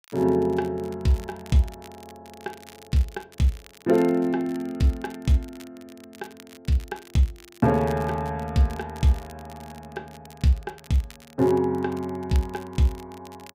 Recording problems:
crackle; vinyl, SNR 24 dB

